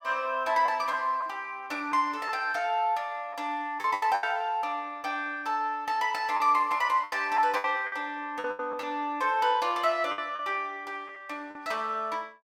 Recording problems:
lost packets; 7% of the sound replaced, filled with the last packet

